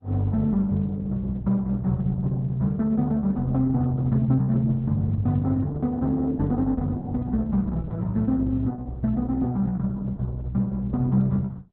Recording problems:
lossy codec; Opus, log-spectral distance 2 dB, nothing above 3.9 kHz

